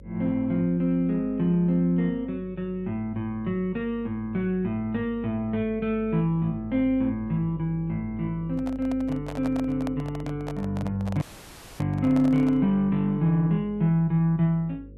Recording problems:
mains hum; 50 Hz, harmonics up to 550 Hz, SNR 19 dB
microphone handling noise; from 8.5 to 13 s; peak -6 dB vs average level
audio cutting out; at 11 s for 0.5 s

